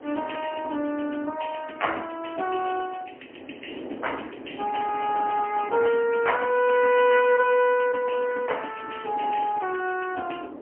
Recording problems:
phone line; 240 Hz to 3.1 kHz, AMR-NB, then MP3
wind on the microphone; below 550 Hz, SNR 16 dB

